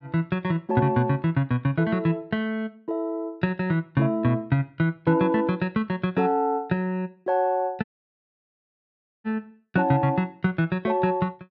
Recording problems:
audio cutting out; at 8 s for 1.5 s

